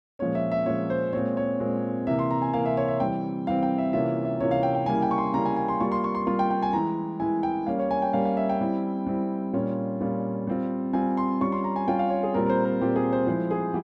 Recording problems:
none

